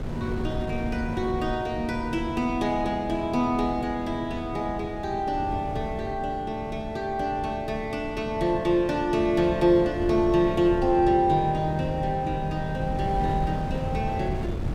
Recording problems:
wind on the microphone; below 230 Hz, SNR 9 dB

